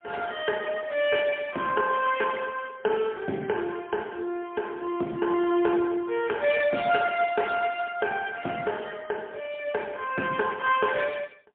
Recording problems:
telephone audio; 220 Hz to 3.1 kHz, AMR-NB, then MP3

